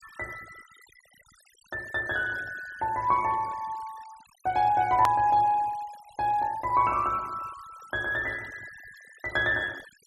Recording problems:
noise reduction artefacts; signal-to-artefact ratio 23 dB
edit click; at 5 s

